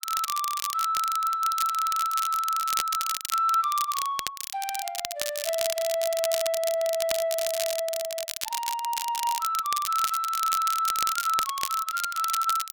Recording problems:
crackling; vinyl, SNR 5 dB

